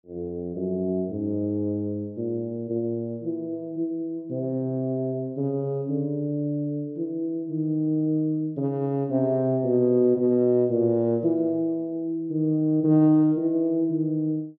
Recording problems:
none

